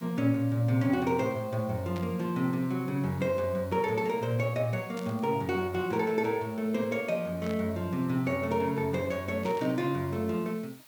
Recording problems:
background hiss; SNR 24 dB
static burst; 4 times, first at 2 s; peak -11 dB vs average level

